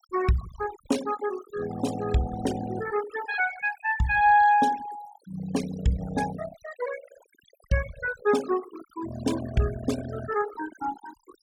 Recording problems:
denoising artefacts; signal-to-artefact ratio 14 dB

